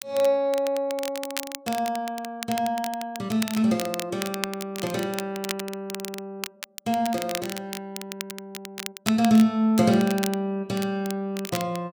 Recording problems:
crackling; vinyl, SNR 10 dB

